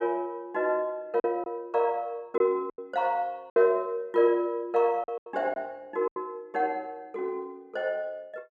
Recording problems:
lost packets; 5% of the sound replaced, filled with silence

